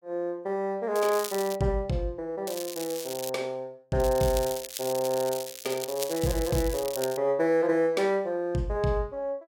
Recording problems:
crackling; at 1 s, at 2.5 s and from 4 to 7 s; loose cable, SNR 9 dB

